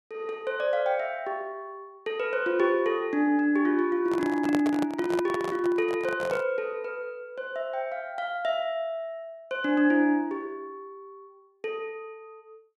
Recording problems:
handling noise; from 4 to 6.5 s; peak 0 dB vs average level

